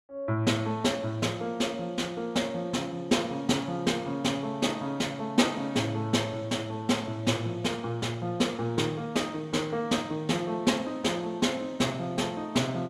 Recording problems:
none

